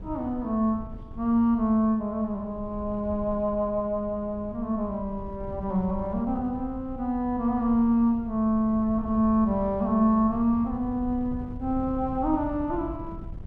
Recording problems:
wind noise; below 120 Hz, SNR 15 dB

